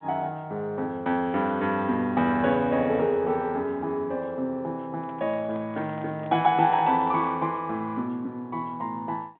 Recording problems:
telephone audio; 130 Hz to 3.7 kHz, G.726
handling noise; from 5 to 7.5 s; peak -10 dB vs average level

